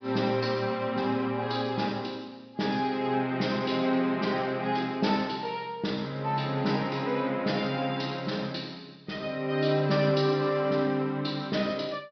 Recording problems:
treble missing; nothing above 5.5 kHz

